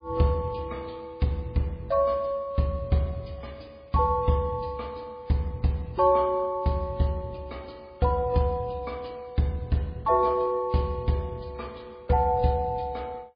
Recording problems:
lossy codec; MP3, log-spectral distance 2 dB

